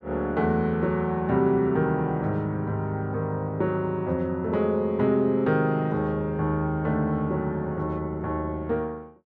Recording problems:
none

